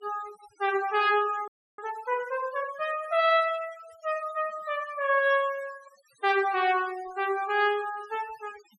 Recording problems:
noise reduction artefacts; signal-to-artefact ratio 19 dB
frozen audio; at 1.5 s

